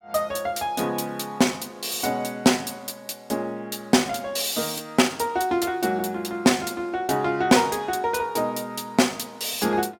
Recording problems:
none

